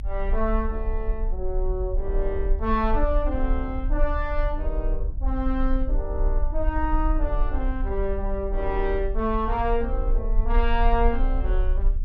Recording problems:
low-frequency rumble; below 44 Hz, strongest tone 30 Hz, SNR 0 dB

